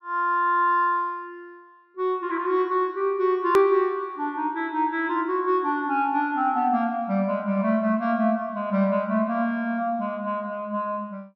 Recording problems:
treble missing; nothing above 6 kHz
hard cut with a click; at 3.5 s

